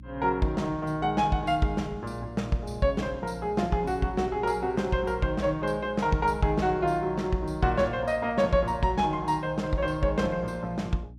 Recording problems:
hum; 60 Hz, harmonics up to 300 Hz, SNR 18 dB

